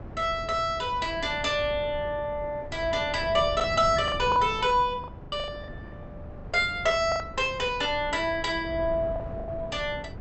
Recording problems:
treble cut off; nothing above 7.9 kHz
wind noise; below 290 Hz, SNR 13 dB
lost packets; 6% of the sound replaced, filled with the last packet

